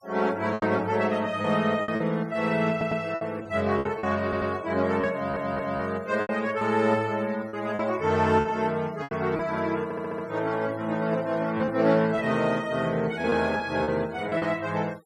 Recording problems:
denoising artefacts; signal-to-artefact ratio 23 dB
lost packets; 7% of the sound replaced, filled with repeated pitch periods
stutter; 4 times, first at 2.5 s

